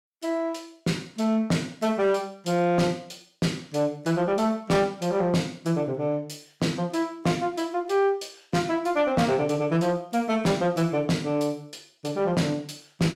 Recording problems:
distorted audio; soft clipping, signal-to-distortion ratio 12 dB

